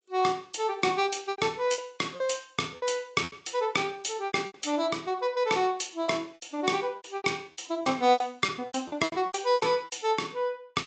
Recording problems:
treble cut off; nothing above 7.6 kHz
lossy compression; Vorbis, log-spectral distance 4 dB
lost packets; 14% of the sound replaced, filled with repeated pitch periods

